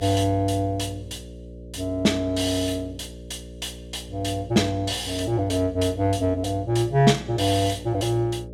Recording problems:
hum; 60 Hz, harmonics up to 600 Hz, SNR 16 dB

